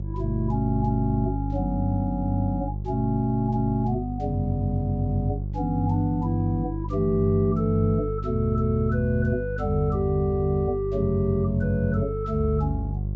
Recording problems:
treble missing; nothing above 8 kHz
hum; 50 Hz, harmonics up to 400 Hz, SNR 6 dB

